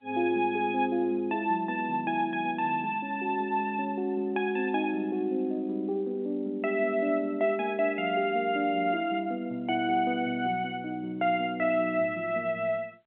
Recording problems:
phone line; 240 Hz to 3.3 kHz, G.711

